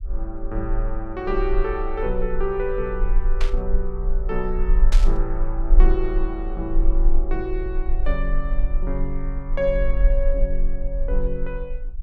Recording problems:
rumble; below 38 Hz, strongest tone 22 Hz, SNR -3 dB
static burst; at 3.5 s and at 5 s; peak 0 dB vs average level

